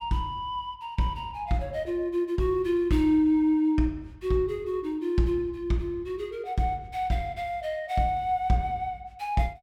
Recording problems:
none

